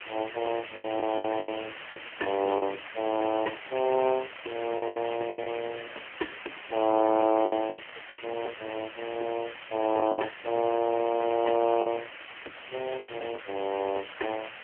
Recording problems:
telephone audio; 280 Hz to 2.9 kHz, AMR-NB
background hiss; SNR 12 dB
lost packets; 7% of the sound replaced, filled with the last packet

